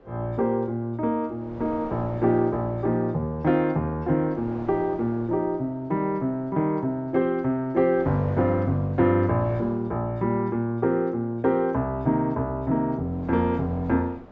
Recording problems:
low-pass filter; nothing above 7.5 kHz
wind on the microphone; below 760 Hz, SNR 19 dB

